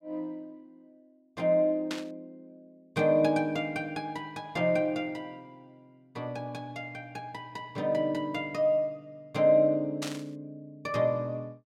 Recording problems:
static burst; at 2 s and at 10 s; peak -3 dB vs average level

